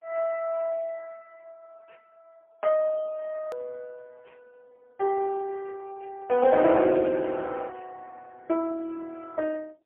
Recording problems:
telephone audio; 280 Hz to 3.1 kHz, AMR-NB, then MP3
edit click; at 3.5 s

